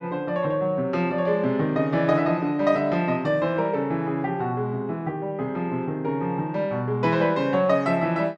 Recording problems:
none

